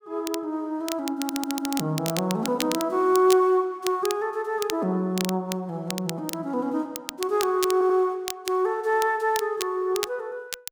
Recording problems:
crackle; vinyl, SNR 10 dB
stutter; at 1 s and at 7.5 s

